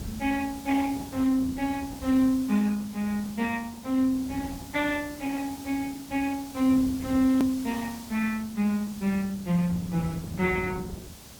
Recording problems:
codec artefacts; Opus, log-spectral distance 2 dB, nothing above 19.5 kHz
hiss; SNR 18 dB
low-frequency rumble; below 170 Hz, SNR 13 dB
hard cut with a click; at 7.5 s

